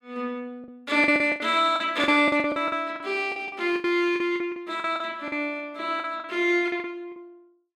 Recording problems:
lost packets; 15% of the sound replaced, filled with the last packet

